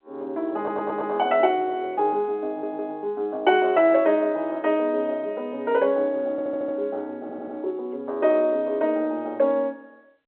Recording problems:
telephone audio; 280 Hz to 3.4 kHz, G.711
stutter; 4 times, first at 0.5 s

